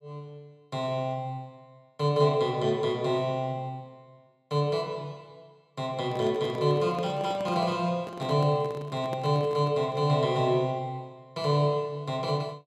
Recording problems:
microphone handling noise; from 6 to 10 s; peak -7 dB vs average level

